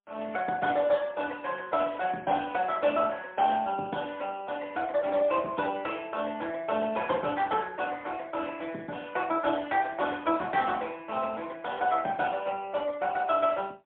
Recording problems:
phone line; 190 Hz to 3.5 kHz, AMR-NB, then MP3

